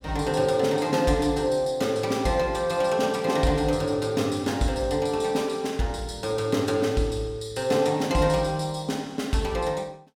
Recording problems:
none

